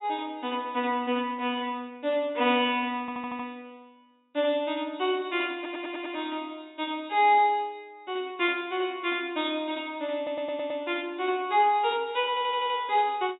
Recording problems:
low-pass filter; nothing above 4 kHz
audio stuttering; 4 times, first at 3 s

